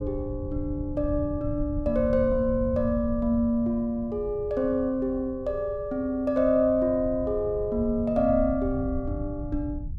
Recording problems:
low-frequency rumble; below 110 Hz, SNR 10 dB

